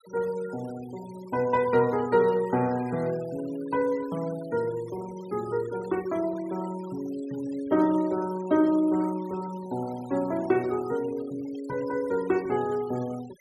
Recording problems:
noise reduction artefacts; signal-to-artefact ratio 21 dB

